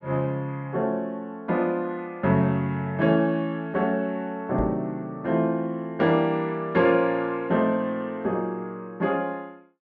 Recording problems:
knock on the microphone; at 4.5 s; peak -3 dB vs average level

